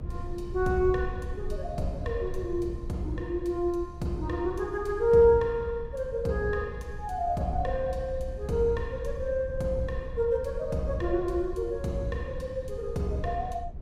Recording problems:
low-frequency rumble; below 76 Hz, SNR 11 dB

